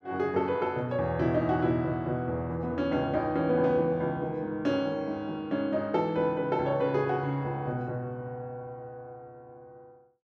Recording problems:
none

